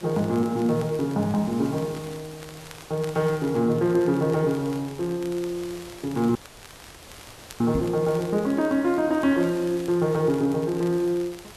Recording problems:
background hiss; slope -3 dB per octave, SNR 19 dB
crackling; vinyl, SNR 24 dB
audio cutting out; at 6.5 s for 1.5 s
knock on the microphone; at 8 s; peak 0 dB vs average level

